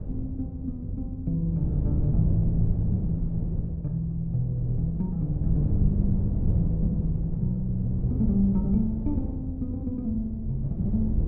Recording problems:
wind noise; below 140 Hz, SNR 2 dB

